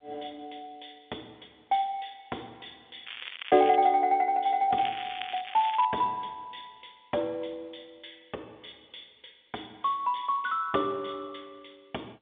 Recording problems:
telephone audio; 220 Hz to 3.5 kHz, G.711
crackling; at 3 s and from 5 to 6 s; loose cable, SNR 12 dB

